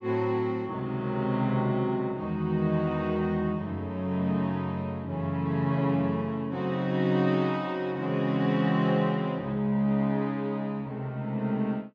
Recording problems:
none

